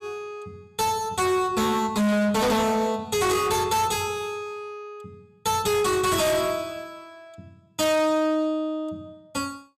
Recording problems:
distortion; hard clipping, signal-to-distortion ratio 7 dB

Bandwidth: 15 kHz